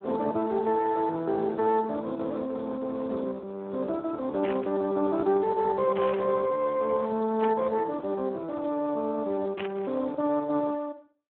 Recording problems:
telephone audio; 240 Hz to 2.1 kHz, Speex
burst of static; 4 times, first at 4.5 s; peak -2 dB vs average level

